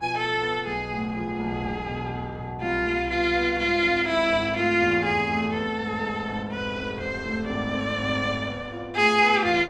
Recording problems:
wind noise; below 890 Hz, SNR 21 dB

